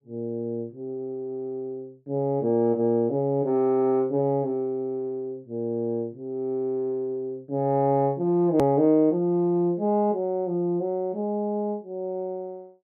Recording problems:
edit click; at 8.5 s

